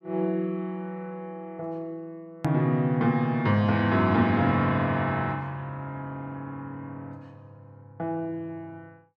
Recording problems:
hard cut with a click; at 2.5 s

